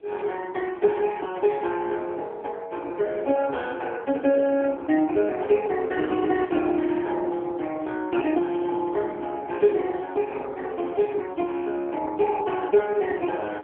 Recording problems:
phone line; 260 Hz to 3.2 kHz, AMR-NB
wind on the microphone; below 470 Hz, SNR 21 dB

